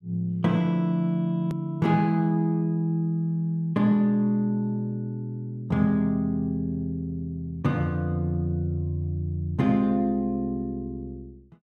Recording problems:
hard cut with a click; at 1.5 s

